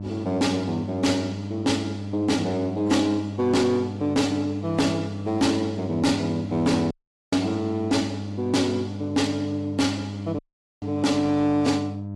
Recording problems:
lossy codec; AAC, log-spectral distance 2 dB
distorted audio; soft clipping, signal-to-distortion ratio 10 dB
hum; 50 Hz, harmonics up to 700 Hz, SNR 9 dB
dropout; at 7 s and at 10 s

